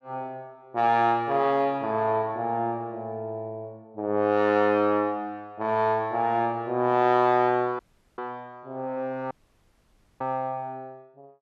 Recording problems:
audio cutting out; at 8 s and at 9.5 s for 1 s

